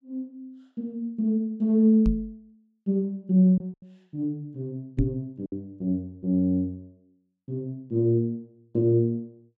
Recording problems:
lost packets; 2% of the sound replaced, filled with silence
microphone bump; at 2 s and at 5 s; peak +4 dB vs average level

